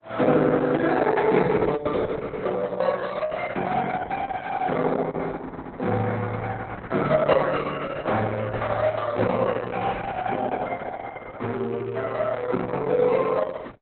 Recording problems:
lossy compression; Opus, log-spectral distance 4 dB, nothing above 4.1 kHz

